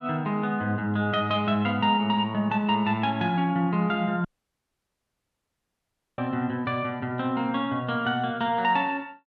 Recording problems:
dropout; at 4.5 s for 2 s

